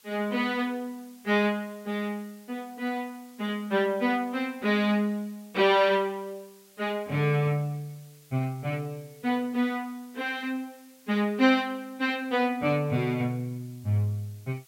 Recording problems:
hiss; slope +2 dB per octave, SNR 27 dB

